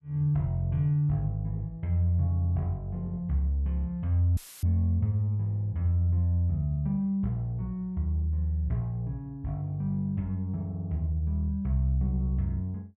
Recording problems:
dropout; at 4.5 s; filled with static

